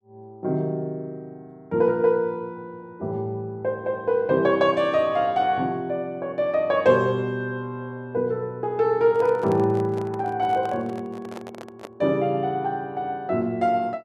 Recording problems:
handling noise; from 9 to 12 s; peak -9 dB vs average level

